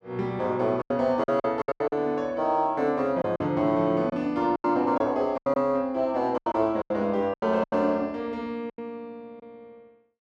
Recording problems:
lost packets; 11% of the sound replaced, filled with silence

